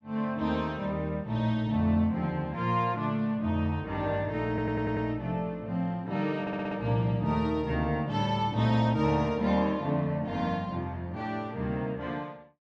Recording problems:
stutter; at 4.5 s and at 6.5 s

